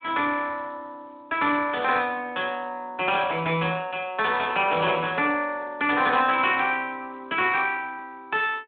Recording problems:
phone line; 220 Hz to 3.7 kHz, Speex

